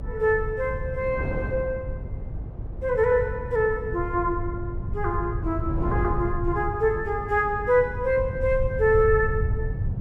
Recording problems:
hum; 50 Hz, harmonics up to 500 Hz, SNR 15 dB
low-frequency rumble; below 110 Hz, SNR 8 dB
wind noise; below 380 Hz, SNR 15 dB

